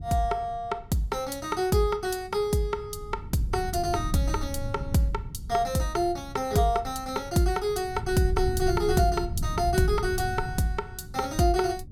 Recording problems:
wind on the microphone; below 120 Hz, SNR 9 dB

